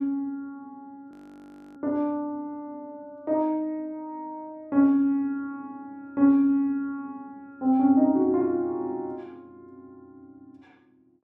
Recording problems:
frozen audio; at 1 s for 0.5 s

